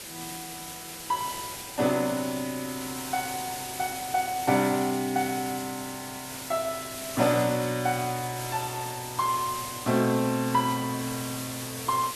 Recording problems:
background hiss; SNR 8 dB

